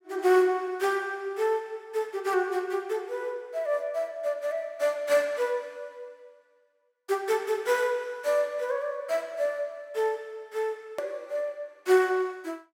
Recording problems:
hard cut with a click; at 11 s

